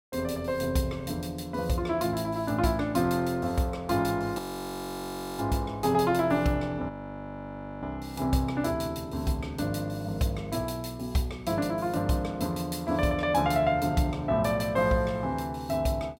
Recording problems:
audio freezing; at 4.5 s for 1 s and at 7 s for 1 s

